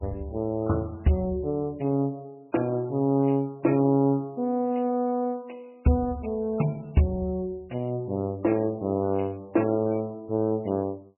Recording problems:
lossy compression; MP3, log-spectral distance 4 dB, nothing above 2.8 kHz

